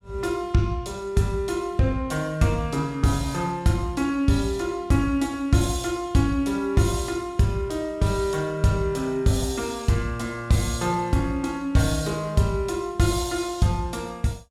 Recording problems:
none

